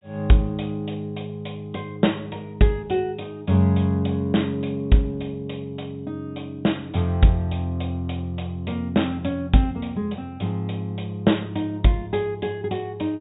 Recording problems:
low-pass filter; nothing above 4 kHz

